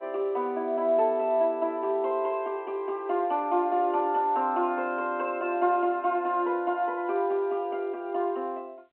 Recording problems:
phone line; 190 Hz to 3.7 kHz, G.711

